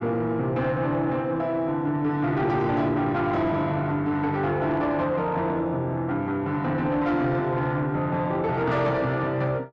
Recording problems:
distorted audio; soft clipping, signal-to-distortion ratio 12 dB

